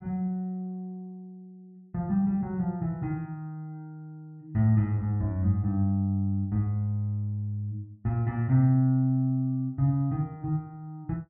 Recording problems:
none

